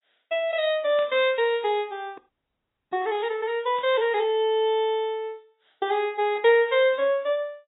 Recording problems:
lossy compression; AAC, log-spectral distance 2 dB, nothing above 3.4 kHz
burst of static; at 1 s and at 4 s; peak -13 dB vs average level
frozen audio; at 2 s for 1 s

